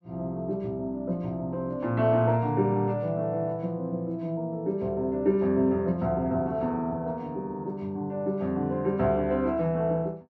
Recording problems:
none

